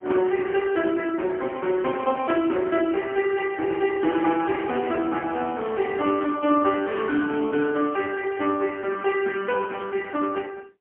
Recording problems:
phone line; 260 Hz to 3.2 kHz, AMR-NB, then MP3
crackle; 4 times, first at 1 s; loose cable, SNR 29 dB

